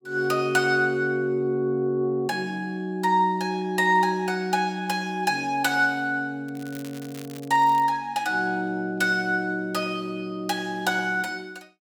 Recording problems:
crackle; from 6.5 to 8 s; loose cable, SNR 21 dB

